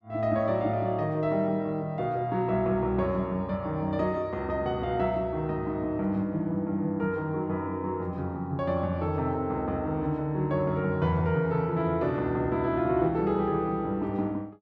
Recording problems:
none

